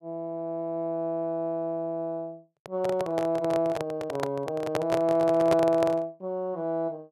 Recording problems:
handling noise; from 2.5 to 6 s; peak +3 dB vs average level

